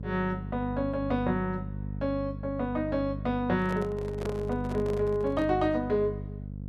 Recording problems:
hum; 50 Hz, harmonics up to 500 Hz, SNR 7 dB
handling noise; from 3.5 to 5.5 s; peak -3 dB vs average level

